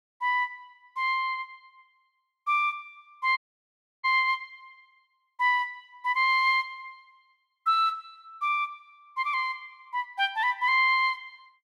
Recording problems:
dropout; at 3.5 s for 0.5 s

